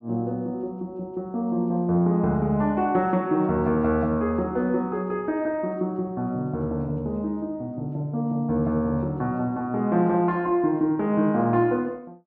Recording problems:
none

